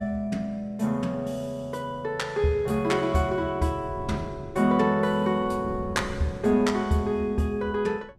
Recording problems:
wind noise; below 210 Hz, SNR 16 dB

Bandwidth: 14.5 kHz